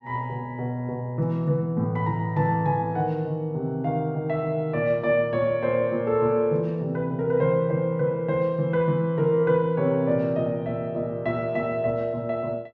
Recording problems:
none

